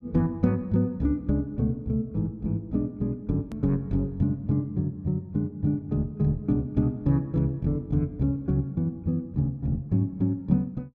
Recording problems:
edit click; at 3.5 s

